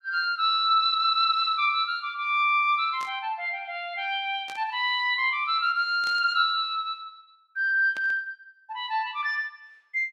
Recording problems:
static burst; 4 times, first at 3 s; peak -13 dB vs average level

